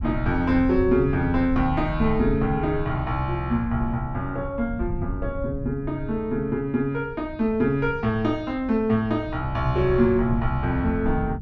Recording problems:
low-frequency rumble; below 100 Hz, SNR 10 dB

